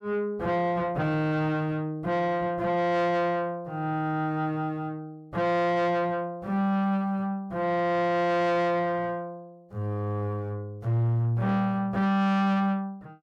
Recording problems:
distorted audio; soft clipping, signal-to-distortion ratio 10 dB

